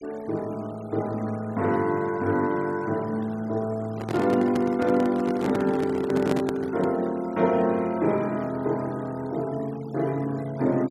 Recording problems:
noise reduction artefacts; signal-to-artefact ratio 22 dB
handling noise; from 4 to 7 s; peak +2 dB vs average level

